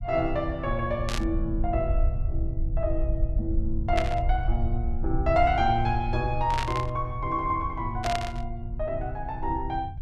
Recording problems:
rumble; below 68 Hz, SNR 3 dB
burst of static; 4 times, first at 1 s; peak +1 dB vs average level

